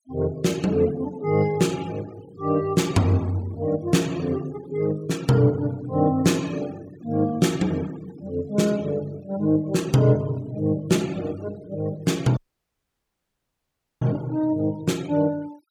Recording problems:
noise reduction artefacts; signal-to-artefact ratio 22 dB
dropout; at 12 s for 1.5 s

